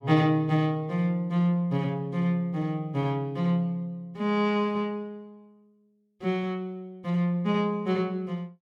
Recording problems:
none

